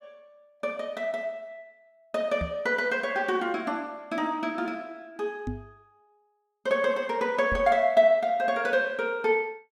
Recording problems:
microphone thump; at 2.5 s, at 5.5 s and at 7.5 s; peak -3 dB vs average level

